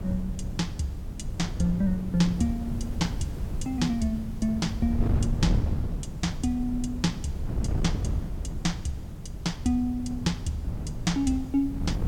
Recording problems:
hiss; slope -2 dB per octave, SNR 26 dB
wind on the microphone; below 150 Hz, SNR 4 dB

